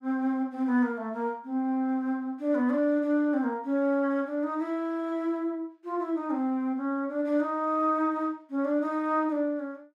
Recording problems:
none

